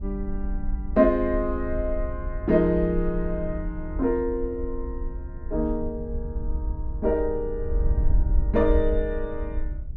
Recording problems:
wind on the microphone; below 60 Hz, SNR 5 dB

